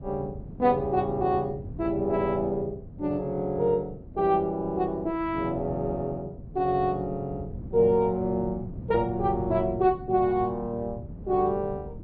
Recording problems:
treble cut off; nothing above 4.7 kHz
wind noise; below 200 Hz, SNR 14 dB

